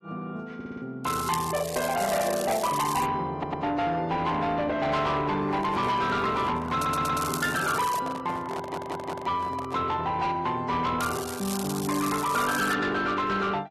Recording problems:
lossy compression; AAC, log-spectral distance 4 dB, nothing above 13.1 kHz
distortion; soft clipping, signal-to-distortion ratio 11 dB
audio stuttering; 4 times, first at 0.5 s
crackle; from 1 to 3 s, from 7 to 8 s and from 11 to 13 s; loose cable, SNR 10 dB
microphone handling noise; from 5.5 to 10 s; peak -4 dB vs average level

